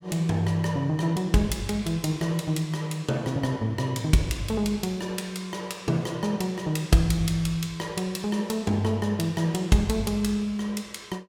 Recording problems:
none

